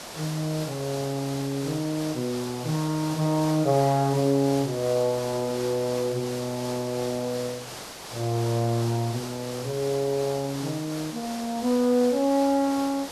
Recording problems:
hiss; slope -3 dB per octave, SNR 11 dB

